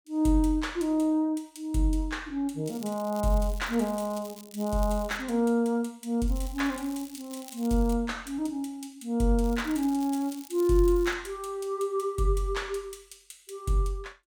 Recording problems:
crackle; from 2.5 to 5 s, from 6.5 to 8 s and from 9.5 to 11 s; loose cable, SNR 19 dB

